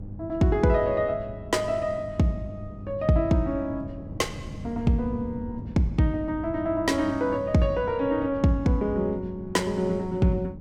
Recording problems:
hum; 50 Hz, harmonics up to 600 Hz, SNR 17 dB
wind noise; below 190 Hz, SNR 15 dB

